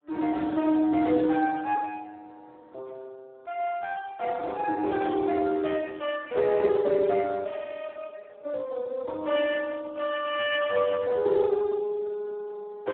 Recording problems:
telephone audio; 260 Hz to 2.5 kHz, Speex

